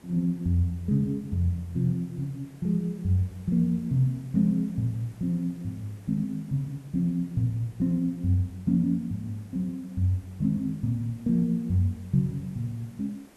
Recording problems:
hiss; slope -5 dB per octave, SNR 27 dB

